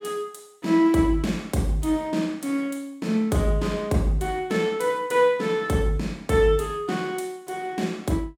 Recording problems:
none

